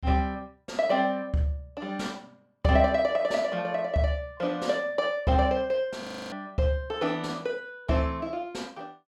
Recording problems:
audio freezing; at 6 s

